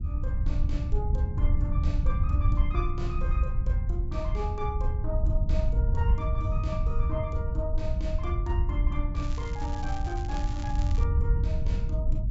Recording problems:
low-pass filter; nothing above 8 kHz
rumble; below 82 Hz, SNR -8 dB
crackle; from 9 to 11 s; loose cable, SNR 11 dB

